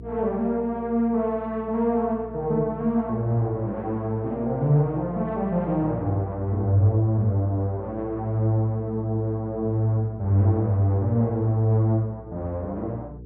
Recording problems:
electrical hum; 60 Hz, harmonics up to 480 Hz, SNR 18 dB

